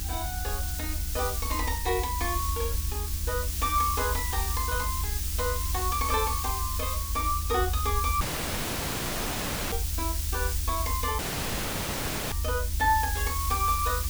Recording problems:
electrical hum; 60 Hz, harmonics up to 360 Hz, SNR 16 dB
hiss; slope +4 dB per octave, SNR 2 dB
low-frequency rumble; below 78 Hz, SNR 3 dB
audio cutting out; at 8 s for 1.5 s and at 11 s for 1 s

